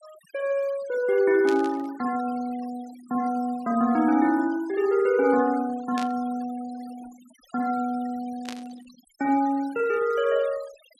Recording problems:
denoising artefacts; signal-to-artefact ratio 23 dB
burst of static; at 1.5 s, at 6 s and at 8.5 s; peak -6 dB vs average level

